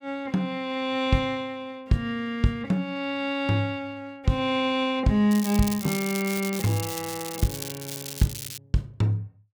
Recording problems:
crackle; from 5.5 to 8.5 s; loose cable, SNR 8 dB

